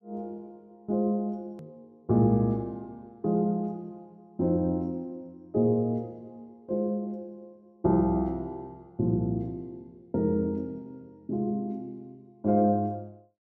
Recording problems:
edit click; at 1.5 s

